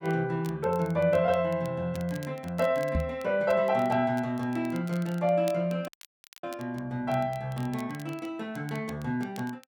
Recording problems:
crackle; vinyl, SNR 23 dB
microphone thump; at 3 s; peak +4 dB vs average level
dropout; at 6 s for 0.5 s

